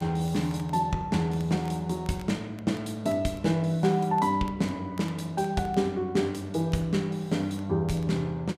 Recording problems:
crackle; vinyl, SNR 28 dB

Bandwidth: 14.5 kHz